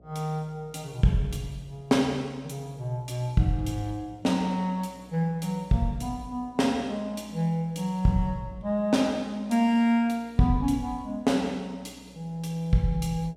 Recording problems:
electrical hum; 60 Hz, harmonics up to 720 Hz, SNR 28 dB

